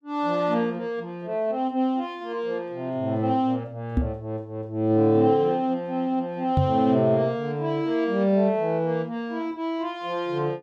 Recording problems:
microphone bump; at 4 s and at 6.5 s; peak +6 dB vs average level

